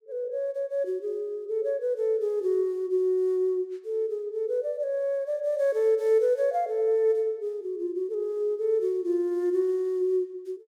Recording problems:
none

